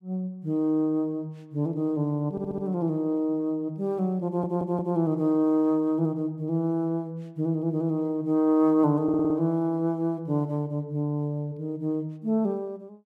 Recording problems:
stutter; at 2.5 s, at 4.5 s and at 9 s

